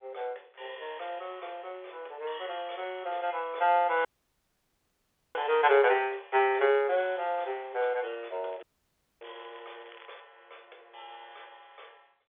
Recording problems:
phone line; 370 Hz to 3.5 kHz, G.711
audio cutting out; at 4 s for 1.5 s and at 8.5 s for 0.5 s
crackling; from 8.5 to 10 s; loose cable, SNR 27 dB

